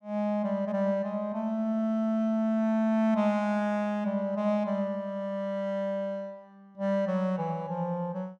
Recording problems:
none

